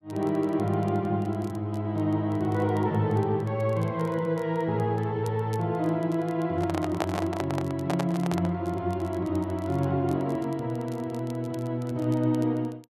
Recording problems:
crackling; vinyl, SNR 27 dB
microphone handling noise; from 6.5 to 8.5 s; peak +3 dB vs average level

